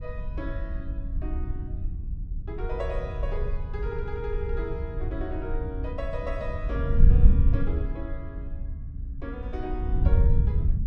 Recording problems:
wind noise; below 72 Hz, SNR -8 dB

